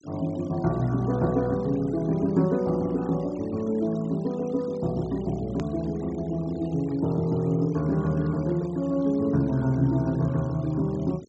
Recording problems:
treble cut off; nothing above 8 kHz
denoising artefacts; signal-to-artefact ratio 24 dB
edit click; at 5.5 s

